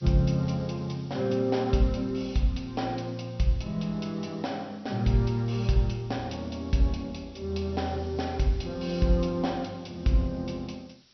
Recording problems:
treble missing; nothing above 5.8 kHz
background hiss; SNR 27 dB

